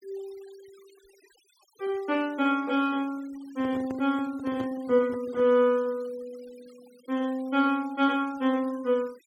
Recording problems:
denoising artefacts; signal-to-artefact ratio 26 dB
handling noise; from 3.5 to 5.5 s; peak -8 dB vs average level

